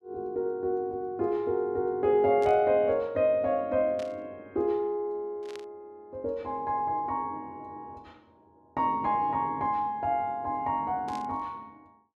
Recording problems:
burst of static; 4 times, first at 2.5 s; peak -13 dB vs average level

